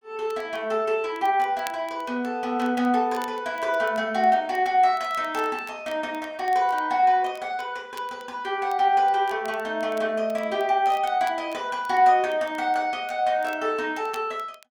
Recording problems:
crackling; vinyl, SNR 26 dB

